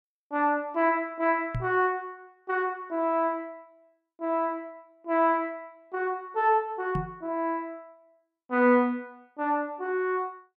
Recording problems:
microphone thump; at 1.5 s and at 7 s; peak 0 dB vs average level

